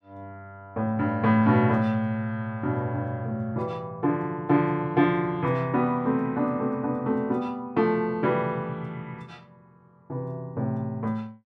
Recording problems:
none

